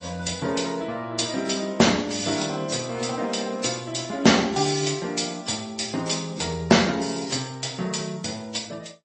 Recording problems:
lossy codec; MP3, then AAC, log-spectral distance 7 dB, nothing above 8 kHz

